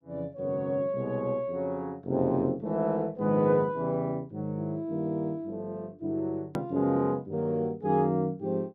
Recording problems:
hard cut with a click; at 6.5 s

